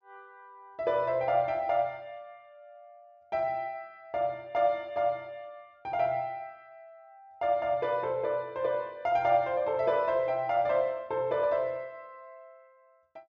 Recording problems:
low-pass filter; nothing above 8 kHz

